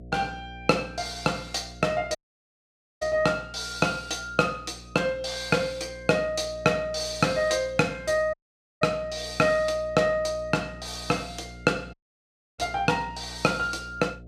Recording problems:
hum; 60 Hz, harmonics up to 720 Hz, SNR 19 dB
audio cutting out; at 2 s for 1 s, at 8.5 s and at 12 s for 0.5 s

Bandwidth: 15 kHz